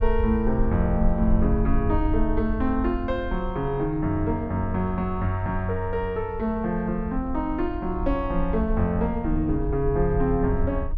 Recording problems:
low-frequency rumble; below 60 Hz, SNR 6 dB

